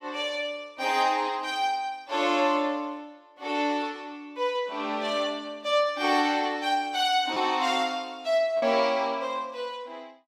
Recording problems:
packet loss; 0.6% of the sound replaced, filled with repeated pitch periods

